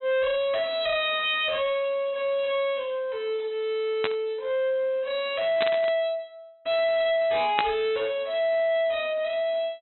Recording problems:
treble missing; nothing above 4 kHz
distorted audio; soft clipping, signal-to-distortion ratio 6 dB
burst of static; at 4 s, at 5.5 s and at 7.5 s; peak +4 dB vs average level

